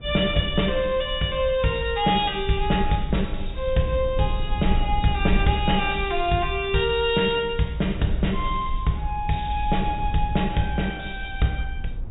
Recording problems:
low-pass filter; nothing above 4 kHz
low-frequency rumble; below 62 Hz, SNR 9 dB

